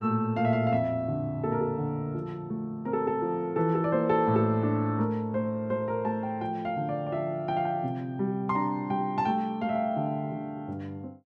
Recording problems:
none

